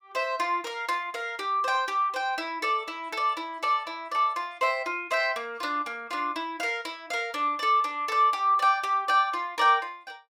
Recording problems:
none

